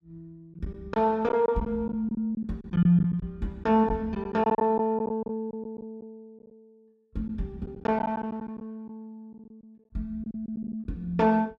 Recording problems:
lost packets; 9% of the sound replaced, filled with silence

